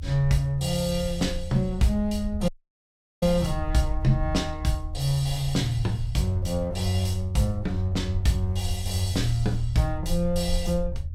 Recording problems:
low-frequency rumble; below 80 Hz, SNR 8 dB
dropout; at 2.5 s for 0.5 s

